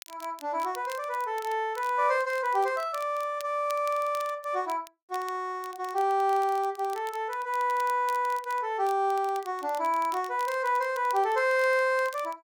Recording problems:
crackle; vinyl, SNR 21 dB

